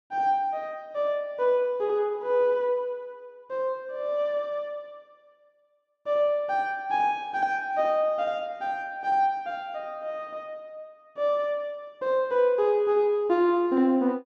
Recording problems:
none

